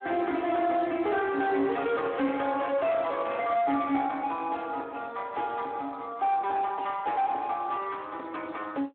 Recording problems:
telephone audio; 240 Hz to 3.7 kHz, Speex
distorted audio; soft clipping, signal-to-distortion ratio 12 dB

